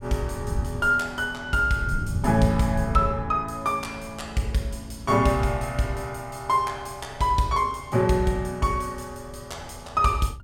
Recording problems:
wind noise; below 130 Hz, SNR 11 dB

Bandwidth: 17 kHz